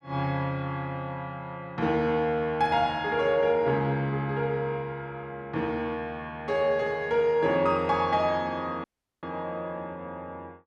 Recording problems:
audio cutting out; at 9 s

